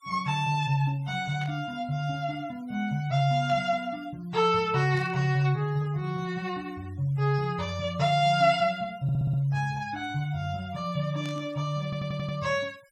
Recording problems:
denoising artefacts; signal-to-artefact ratio 27 dB
static burst; 4 times, first at 1.5 s; peak -13 dB vs average level
stutter; at 9 s and at 12 s

